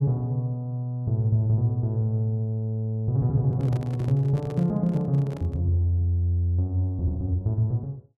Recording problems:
microphone handling noise; from 3.5 to 5.5 s; peak -10 dB vs average level

